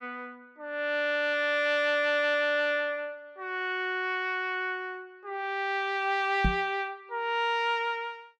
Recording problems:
microphone thump; at 6.5 s; peak +4 dB vs average level

